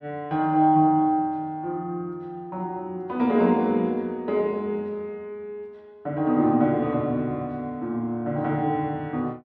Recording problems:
none

